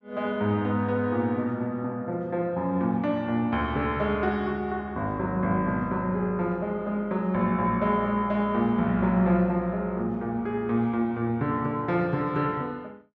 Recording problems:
none

